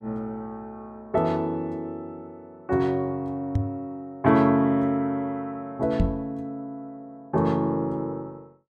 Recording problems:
knock on the microphone; at 3.5 s and at 6 s; peak +6 dB vs average level

